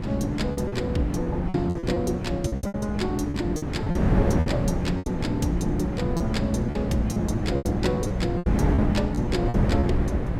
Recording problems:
hum; 60 Hz, harmonics up to 420 Hz, SNR 8 dB
wind on the microphone; below 290 Hz, SNR 0 dB
lost packets; 12% of the sound replaced, filled with repeated pitch periods

